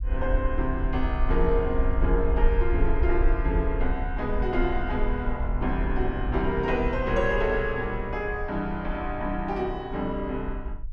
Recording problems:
rumble; below 54 Hz, SNR 3 dB

